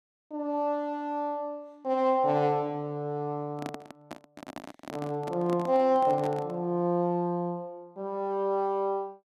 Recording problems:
handling noise; from 3.5 to 6.5 s; peak -5 dB vs average level

